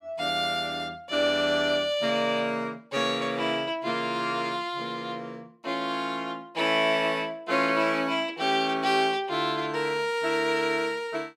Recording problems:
none

